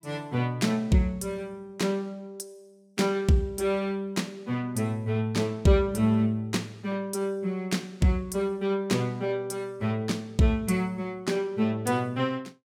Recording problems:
none

